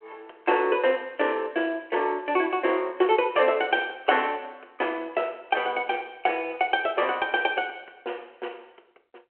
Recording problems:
telephone audio; 300 Hz to 3.2 kHz, G.726

